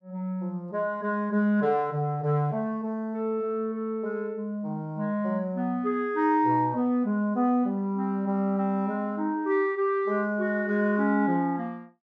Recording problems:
none

